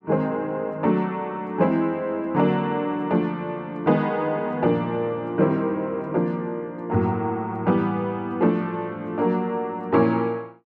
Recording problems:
none

